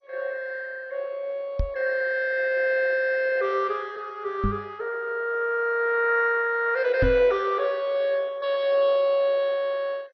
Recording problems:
lossy compression; MP2, log-spectral distance 3 dB, nothing above 5.2 kHz
knock on the microphone; at 1.5 s, at 4.5 s and at 7 s; peak +3 dB vs average level

